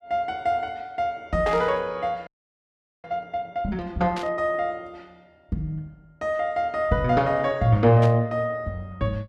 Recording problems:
static burst; at 1.5 s, at 4 s and at 8 s; peak -6 dB vs average level
frozen audio; at 2.5 s for 1 s

